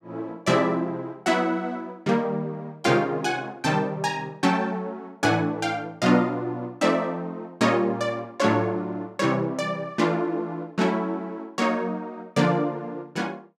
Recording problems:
none

